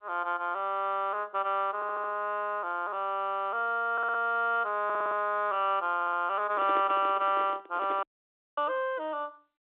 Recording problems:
phone line; 260 Hz to 3.7 kHz, G.711
audio stuttering; 4 times, first at 2 s
microphone handling noise; from 6.5 to 8 s; peak -6 dB vs average level
audio cutting out; at 8 s for 0.5 s

